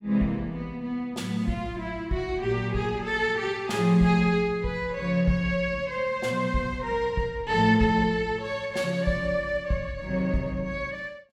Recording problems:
none

